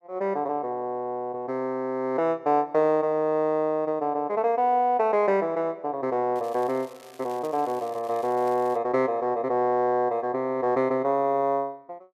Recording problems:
crackling; from 6.5 to 9 s; loose cable, SNR 26 dB

